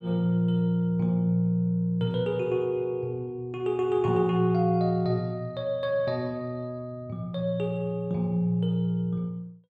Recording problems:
none

